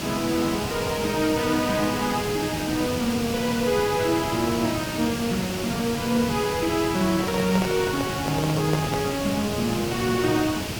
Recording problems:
background hiss; SNR 5 dB
microphone handling noise; from 7 to 9 s; peak 0 dB vs average level

